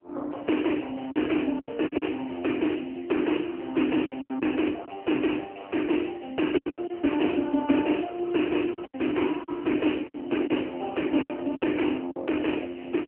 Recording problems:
phone line; 220 Hz to 3.1 kHz, AMR-NB
packet loss; 8% of the sound replaced, filled with silence

